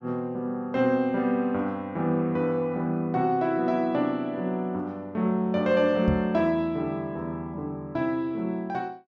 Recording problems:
microphone bump; at 6 s; peak +3 dB vs average level

